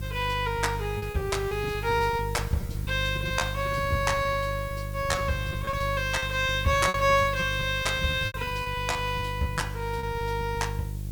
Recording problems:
hum; 50 Hz, harmonics up to 500 Hz, SNR 7 dB
hiss; slope +4 dB per octave, SNR 20 dB
lost packets; 11% of the sound replaced, filled with repeated pitch periods

